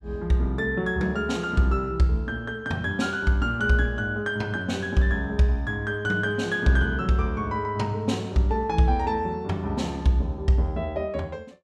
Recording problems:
none

